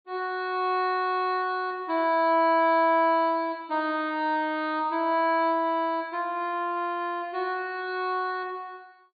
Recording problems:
treble cut off; nothing above 4.6 kHz

